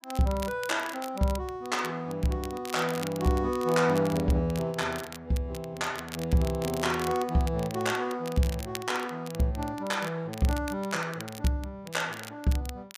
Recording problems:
crackle; vinyl, SNR 14 dB

